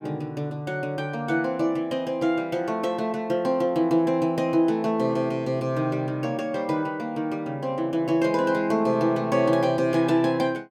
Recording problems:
none

